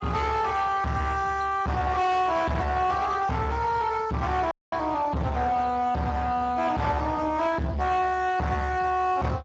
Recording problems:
lossy compression; Speex, log-spectral distance 3 dB, nothing above 7.3 kHz
distorted audio; soft clipping, signal-to-distortion ratio 7 dB
dropout; at 4.5 s

